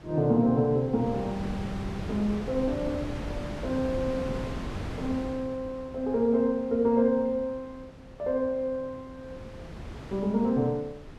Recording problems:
wind on the microphone; below 460 Hz, SNR 10 dB

